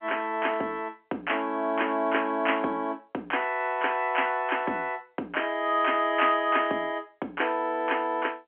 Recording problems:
telephone audio; 220 Hz to 3.2 kHz, G.711

